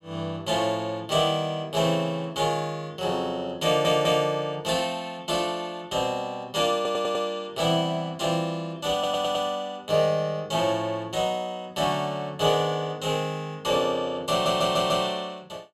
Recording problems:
audio stuttering; 4 times, first at 3.5 s

